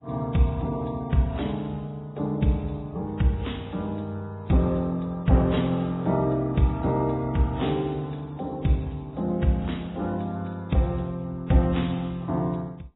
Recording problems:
lossy codec; AAC, then Vorbis, log-spectral distance 3 dB, nothing above 3.8 kHz

